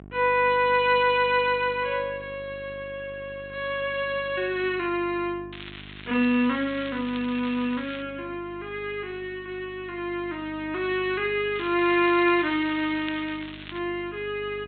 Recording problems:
treble cut off; nothing above 4 kHz
hum; 50 Hz, harmonics up to 1.1 kHz, SNR 21 dB
crackle; from 5.5 to 8 s and from 12 to 14 s; loose cable, SNR 15 dB

